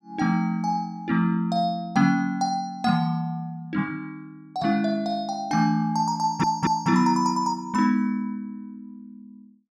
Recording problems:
audio stuttering; at 6 s

